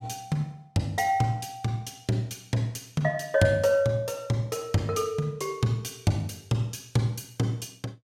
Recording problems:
none

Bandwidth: 16 kHz